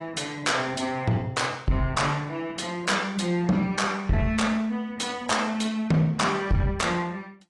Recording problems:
lossy codec; AAC, log-spectral distance 3 dB, nothing above 10.1 kHz
distorted audio; soft clipping, signal-to-distortion ratio 11 dB

